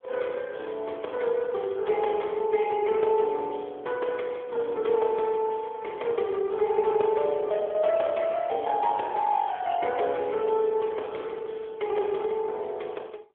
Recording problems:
telephone audio; 320 Hz to 3.4 kHz, AMR-NB

